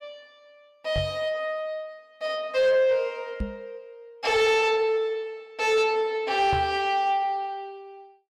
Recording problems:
distortion; soft clipping, signal-to-distortion ratio 12 dB
microphone thump; at 1 s, at 3.5 s and at 6.5 s; peak -1 dB vs average level

